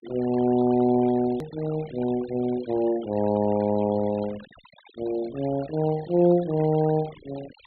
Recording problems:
treble cut off; nothing above 4.3 kHz
noise reduction artefacts; signal-to-artefact ratio 20 dB
hard cut with a click; at 1.5 s

